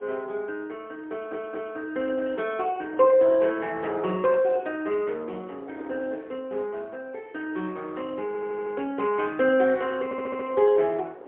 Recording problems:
telephone audio; 320 Hz to 3.3 kHz, AMR-NB, then MP3
wind on the microphone; below 680 Hz, SNR 22 dB
audio stuttering; at 1 s, at 8.5 s and at 10 s

